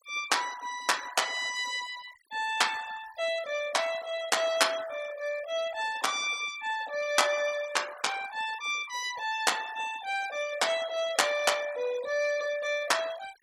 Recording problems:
denoising artefacts; signal-to-artefact ratio 17 dB

